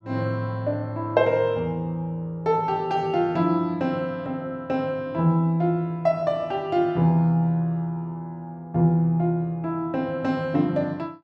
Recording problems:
none

